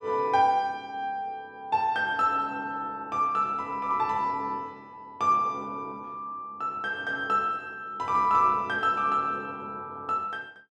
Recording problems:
none

